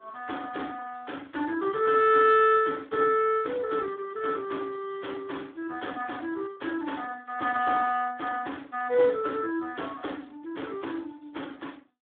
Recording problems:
telephone audio; 280 Hz to 3.6 kHz, Speex

